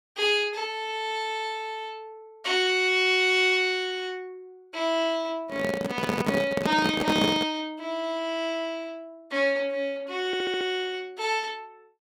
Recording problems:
microphone handling noise; from 5.5 to 7.5 s; peak +5 dB vs average level
audio stuttering; at 10 s

